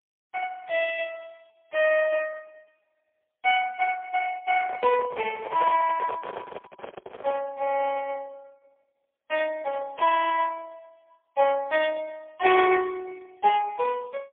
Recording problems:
telephone audio; 320 Hz to 3 kHz, AMR-NB, then MP3
handling noise; from 4.5 to 7.5 s; peak -3 dB vs average level

